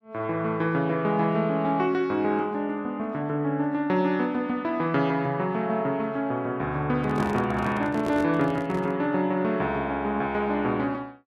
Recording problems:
microphone handling noise; from 7 to 9 s; peak -4 dB vs average level

